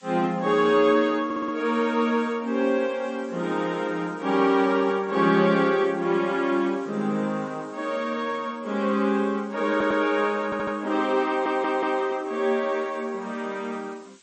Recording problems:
lossy codec; MP3, log-spectral distance 4 dB, nothing above 7.8 kHz
background hiss; slope +2 dB per octave, SNR 30 dB
stutter; 4 times, first at 1.5 s

